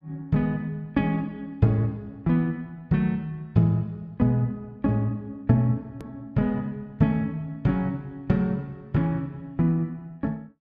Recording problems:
click at an edit; at 6 s

